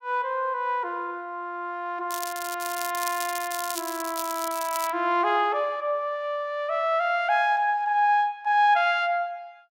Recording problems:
crackle; from 2 to 5 s; loose cable, SNR 9 dB

